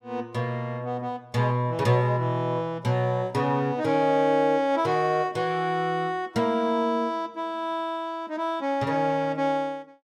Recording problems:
none

